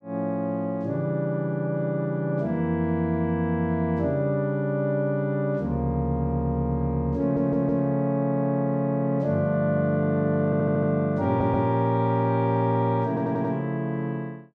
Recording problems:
audio stuttering; 4 times, first at 7 s

